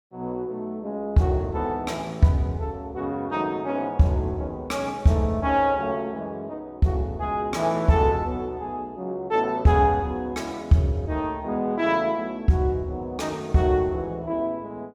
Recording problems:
none

